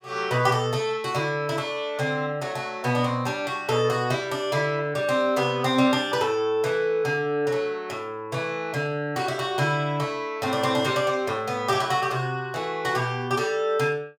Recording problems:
none

